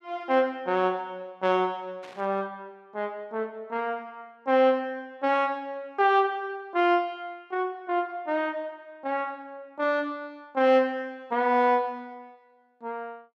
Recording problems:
burst of static; at 2 s; peak -16 dB vs average level

